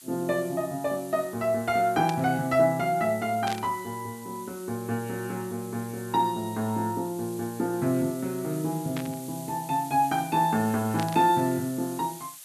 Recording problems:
hiss; slope +3 dB per octave, SNR 16 dB
static burst; 4 times, first at 2 s; peak -4 dB vs average level

